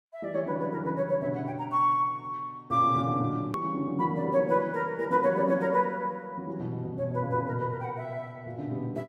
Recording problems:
edit click; at 3.5 s

